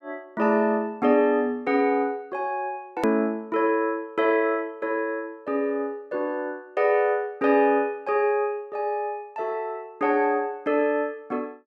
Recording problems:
edit click; at 3 s

